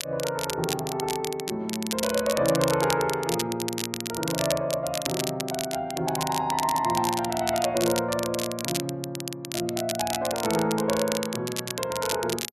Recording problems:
crackle; vinyl, SNR 5 dB

